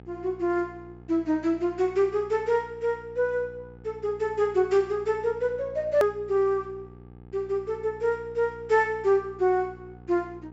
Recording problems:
treble missing; nothing above 8 kHz
mains hum; 60 Hz, harmonics up to 1.3 kHz, SNR 21 dB
edit click; at 6 s

